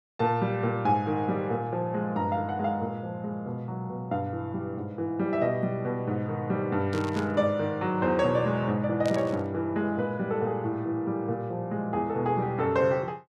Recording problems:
burst of static; at 7 s and at 9 s; peak -8 dB vs average level

